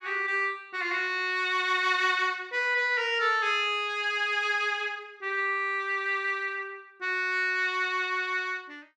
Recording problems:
none

